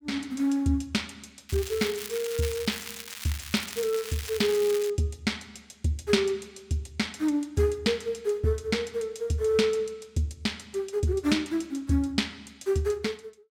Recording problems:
crackle; from 1.5 to 5 s; loose cable, SNR 9 dB

